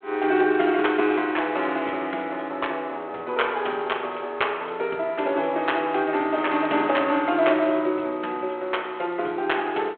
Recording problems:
phone line; 280 Hz to 3.5 kHz, G.726

